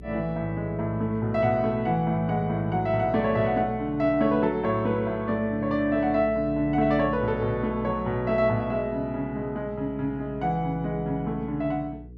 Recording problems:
hum; 60 Hz, harmonics up to 480 Hz, SNR 17 dB

